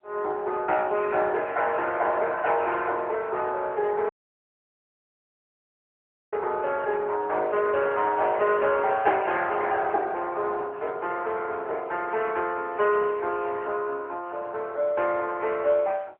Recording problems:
telephone audio; 340 Hz to 3.3 kHz, AMR-NB
dropout; at 4 s for 2 s

